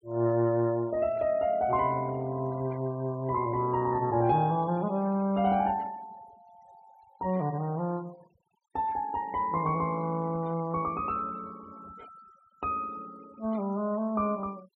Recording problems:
denoising artefacts; signal-to-artefact ratio 26 dB

